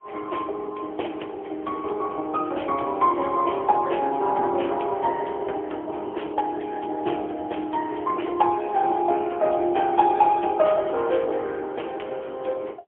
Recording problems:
phone line; 280 Hz to 3.3 kHz, AMR-NB, then MP3

